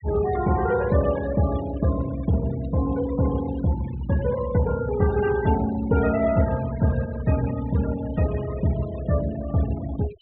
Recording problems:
treble missing; nothing above 4 kHz
noise reduction artefacts; signal-to-artefact ratio 16 dB

